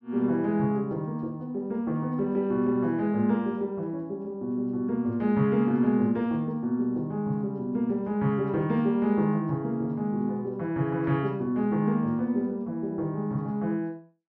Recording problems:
none

